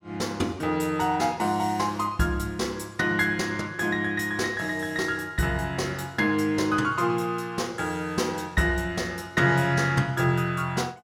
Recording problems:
none

